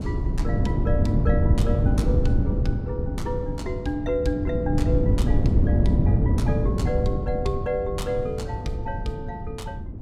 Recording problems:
wind noise; below 160 Hz, SNR -6 dB

